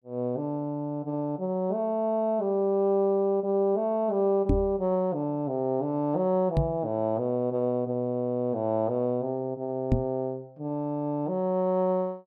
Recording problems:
microphone bump; at 4.5 s, at 6.5 s and at 10 s; peak +7 dB vs average level

